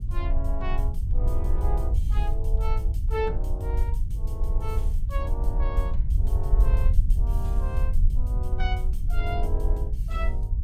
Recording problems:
rumble; below 60 Hz, SNR -9 dB

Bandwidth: 16.5 kHz